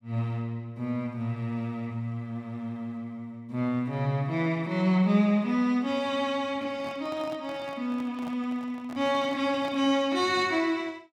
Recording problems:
microphone handling noise; from 6.5 to 10 s; peak -10 dB vs average level

